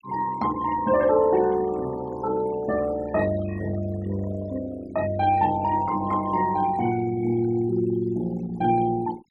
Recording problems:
denoising artefacts; signal-to-artefact ratio 18 dB

